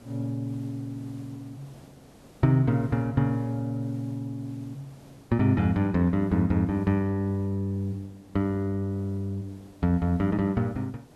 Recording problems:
hiss; slope -6 dB per octave, SNR 26 dB

